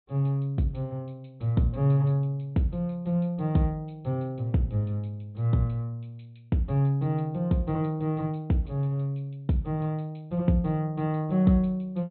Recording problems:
low-pass filter; nothing above 4 kHz

